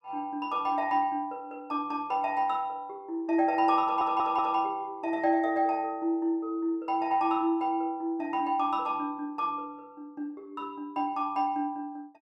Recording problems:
stutter; at 4 s

